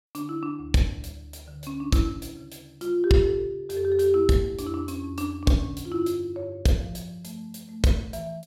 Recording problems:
none

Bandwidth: 16 kHz